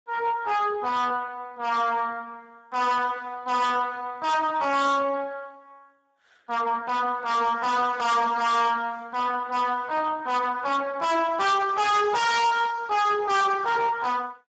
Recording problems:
codec artefacts; Speex, log-spectral distance 4 dB, nothing above 7.6 kHz
distortion; soft clipping, signal-to-distortion ratio 6 dB

